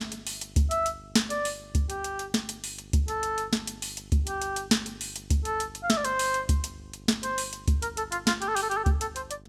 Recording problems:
hum; 50 Hz, harmonics up to 800 Hz, SNR 22 dB

